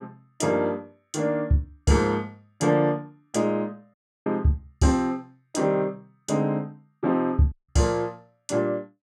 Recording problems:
audio cutting out; at 4 s and at 7.5 s

